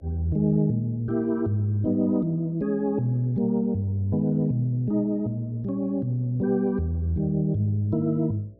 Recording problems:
hum; 60 Hz, harmonics up to 660 Hz, SNR 30 dB

